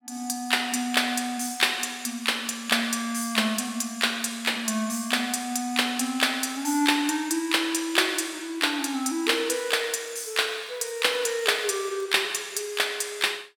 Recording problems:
crackling; from 9.5 to 12 s; loose cable, SNR 30 dB

